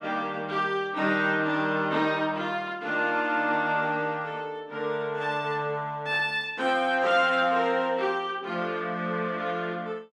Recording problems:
none

